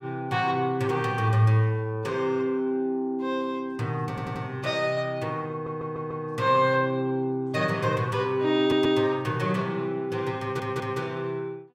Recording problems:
stutter; 4 times, first at 4 s

